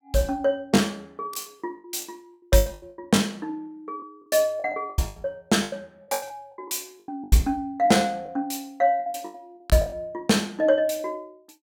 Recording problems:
packet loss; 14% of the sound replaced, filled with the last packet

